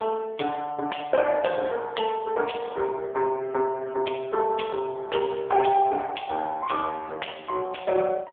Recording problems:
telephone audio; 320 Hz to 3.3 kHz, AMR-NB

